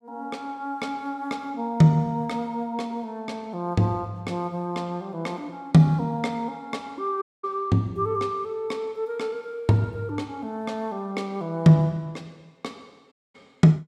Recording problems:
audio cutting out; at 7 s and at 13 s

